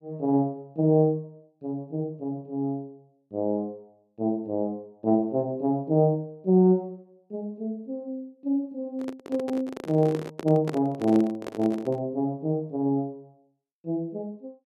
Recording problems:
handling noise; from 9 to 12 s; peak -2 dB vs average level

